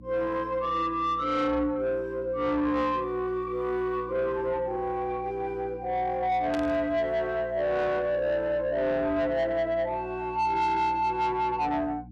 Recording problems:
distortion; soft clipping, signal-to-distortion ratio 11 dB
electrical hum; 60 Hz, harmonics up to 300 Hz, SNR 19 dB
burst of static; at 6.5 s; peak -8 dB vs average level

